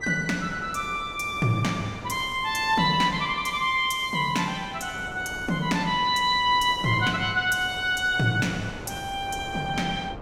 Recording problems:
wind noise; below 740 Hz, SNR 16 dB

